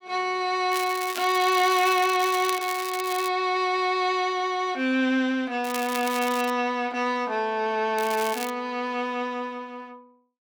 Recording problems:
crackle; from 0.5 to 3.5 s, at 5.5 s and at 8 s; loose cable, SNR 11 dB

